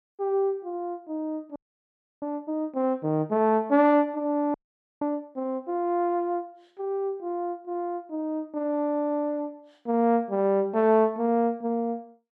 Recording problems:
frozen audio; at 1.5 s for 0.5 s and at 4.5 s

